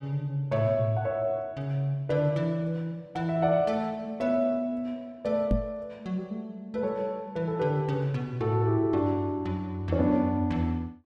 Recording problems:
microphone bump; at 5.5 s; peak +5 dB vs average level

